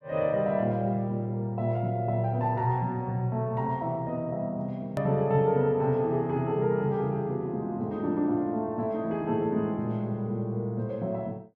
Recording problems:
hard cut with a click; at 5 s

